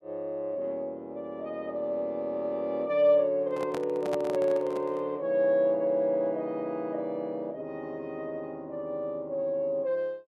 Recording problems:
microphone handling noise; from 3.5 to 5 s; peak -3 dB vs average level

